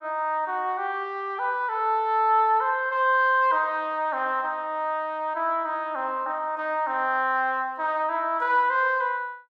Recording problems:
none

